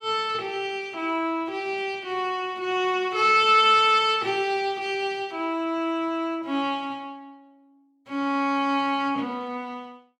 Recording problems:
none

